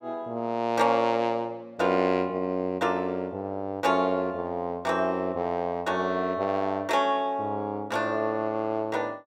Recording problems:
none

